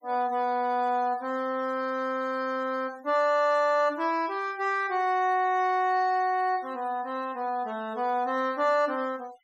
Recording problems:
noise reduction artefacts; signal-to-artefact ratio 25 dB

